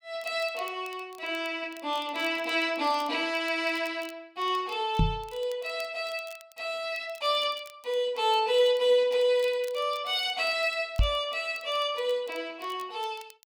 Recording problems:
crackling; vinyl, SNR 25 dB
knock on the microphone; at 5 s and at 11 s; peak +6 dB vs average level

